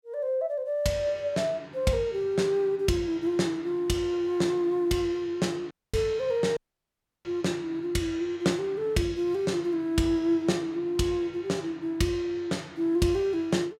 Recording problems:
dropout; at 5.5 s and at 6.5 s for 0.5 s

